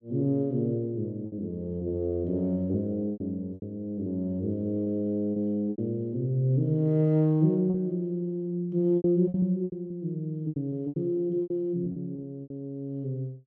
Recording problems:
lost packets; 9% of the sound replaced, filled with repeated pitch periods

